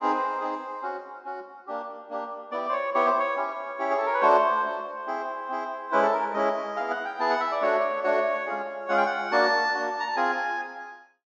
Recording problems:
treble cut off; nothing above 8 kHz

